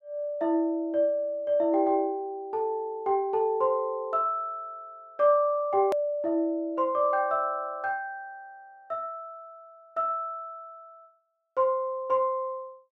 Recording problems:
hard cut with a click; at 6 s

